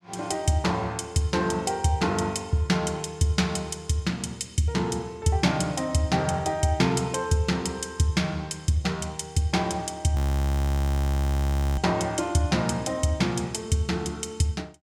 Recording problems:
frozen audio; at 10 s for 1.5 s

